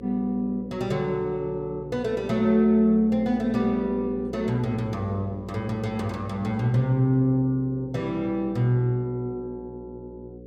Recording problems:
hum; 60 Hz, harmonics up to 540 Hz, SNR 16 dB

